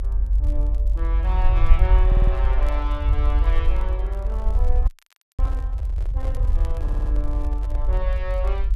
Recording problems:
low-frequency rumble; below 52 Hz, SNR -11 dB
crackling; vinyl, SNR 24 dB
stutter; at 2 s and at 7 s
microphone handling noise; from 4 to 8 s; peak -4 dB vs average level
audio freezing; at 5 s for 0.5 s

